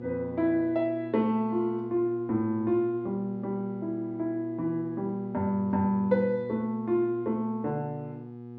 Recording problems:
mains hum; 60 Hz, harmonics up to 840 Hz, SNR 12 dB

